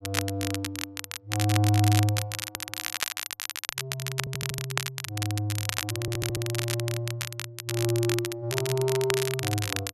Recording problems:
crackle; vinyl, SNR 3 dB
stutter; at 2.5 s, at 4 s and at 6 s

